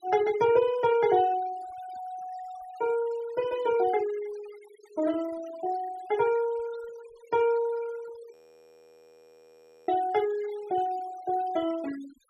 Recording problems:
denoising artefacts; signal-to-artefact ratio 18 dB
frozen audio; at 8.5 s for 1.5 s

